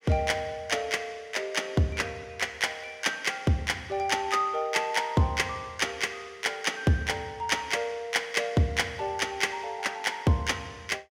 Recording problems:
none

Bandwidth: 16 kHz